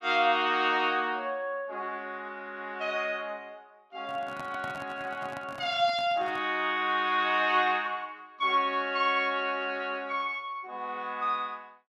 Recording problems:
microphone handling noise; from 4 to 6.5 s; peak -9 dB vs average level

